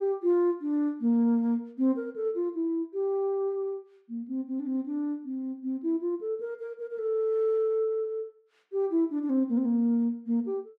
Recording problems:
none

